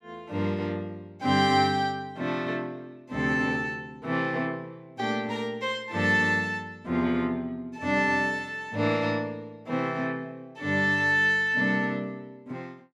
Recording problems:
none

